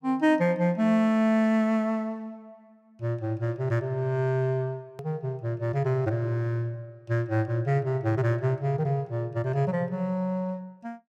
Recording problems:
edit click; at 5 s

